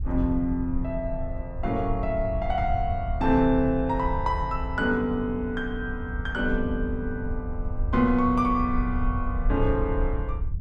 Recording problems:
wind on the microphone; below 72 Hz, SNR 6 dB

